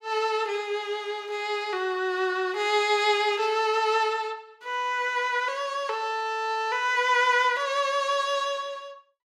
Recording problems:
none

